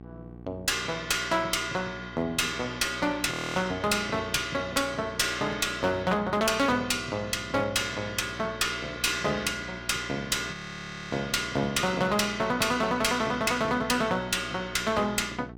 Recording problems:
distorted audio; hard clipping, uneven, signal-to-distortion ratio 7 dB
hum; 60 Hz, harmonics up to 1.1 kHz, SNR 17 dB
audio freezing; at 3.5 s and at 11 s for 0.5 s

